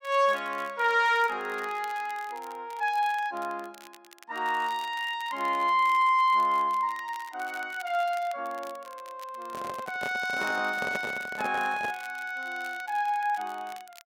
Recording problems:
crackle; vinyl, SNR 23 dB
handling noise; from 9.5 to 12 s; peak -2 dB vs average level

